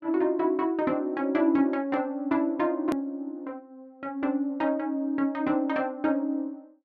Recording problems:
click at an edit; at 3 s

